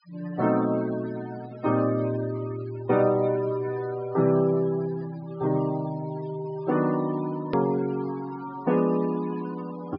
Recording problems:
treble cut off; nothing above 5.5 kHz
noise reduction artefacts; signal-to-artefact ratio 17 dB
hard cut with a click; at 7.5 s

